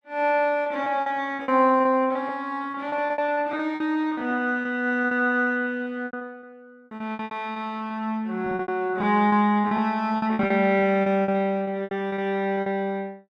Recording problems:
packet loss; 16% of the sound replaced, filled with repeated pitch periods

